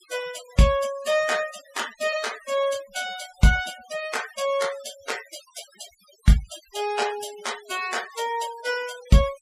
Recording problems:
noise reduction artefacts; signal-to-artefact ratio 15 dB

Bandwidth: 15 kHz